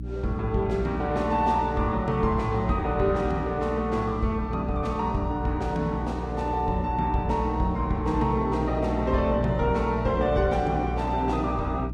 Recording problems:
lossy compression; Vorbis, log-spectral distance 2 dB, nothing above 13.1 kHz
electrical hum; 60 Hz, harmonics up to 300 Hz, SNR 7 dB

